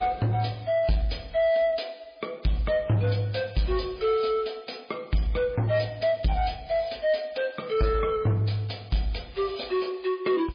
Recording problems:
lossy compression; MP3, log-spectral distance 5 dB
distorted audio; soft clipping, signal-to-distortion ratio 11 dB

